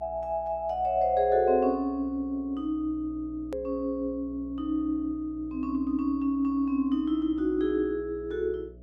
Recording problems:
electrical hum; 60 Hz, harmonics up to 660 Hz, SNR 20 dB
hard cut with a click; at 3.5 s

